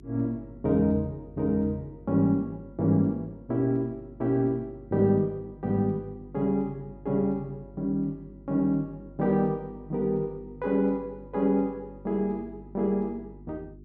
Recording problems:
mains hum; 50 Hz, harmonics up to 400 Hz, SNR 21 dB

